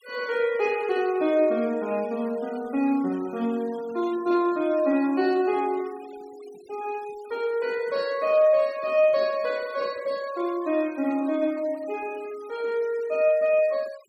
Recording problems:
noise reduction artefacts; signal-to-artefact ratio 23 dB

